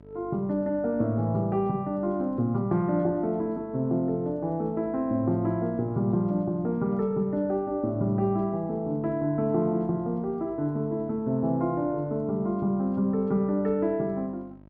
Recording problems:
hum; 50 Hz, harmonics up to 1.3 kHz, SNR 24 dB

